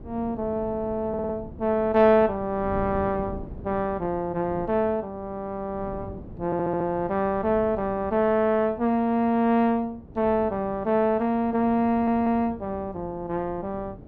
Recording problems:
wind noise; below 300 Hz, SNR 17 dB
audio stuttering; at 1 s, at 6.5 s and at 12 s

